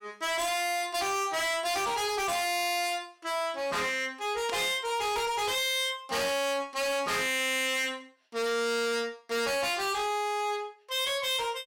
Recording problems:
distorted audio; hard clipping, signal-to-distortion ratio 7 dB
burst of static; at 4.5 s; peak -6 dB vs average level

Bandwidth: 16.5 kHz